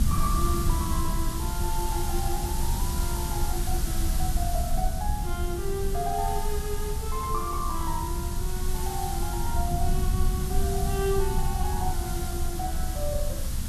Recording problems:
hiss; slope 0 dB per octave, SNR 4 dB
low-frequency rumble; below 76 Hz, strongest tone 22 Hz, SNR -3 dB
wind on the microphone; below 410 Hz, SNR 18 dB

